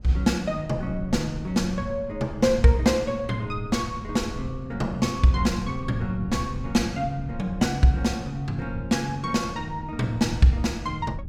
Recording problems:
wind on the microphone; below 120 Hz, SNR 13 dB

